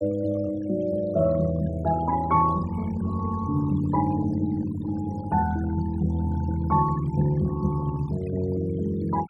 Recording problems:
denoising artefacts; signal-to-artefact ratio 19 dB

